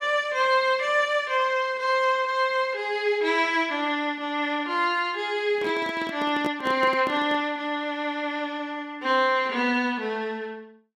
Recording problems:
handling noise; from 5.5 to 7.5 s; peak -3 dB vs average level

